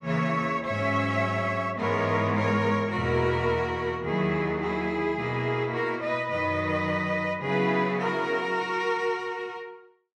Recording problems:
none

